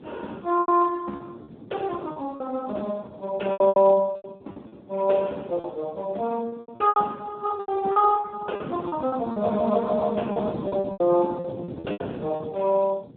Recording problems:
telephone audio; 190 Hz to 2.1 kHz, Speex
wind on the microphone; below 400 Hz, SNR 17 dB
lost packets; 12% of the sound replaced, filled with repeated pitch periods

